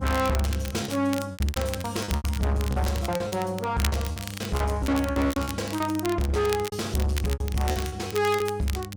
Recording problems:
distortion; soft clipping, signal-to-distortion ratio 7 dB
hum; 50 Hz, harmonics up to 600 Hz, SNR 11 dB
crackling; vinyl, SNR 11 dB
packet loss; 16% of the sound replaced, filled with repeated pitch periods

